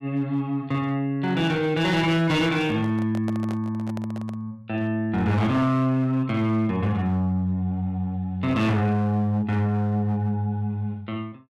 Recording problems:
distortion; hard clipping, signal-to-distortion ratio 11 dB
handling noise; from 2.5 to 4.5 s; peak -7 dB vs average level

